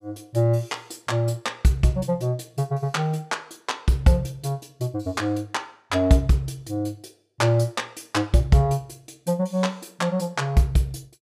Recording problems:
none

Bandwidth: 15.5 kHz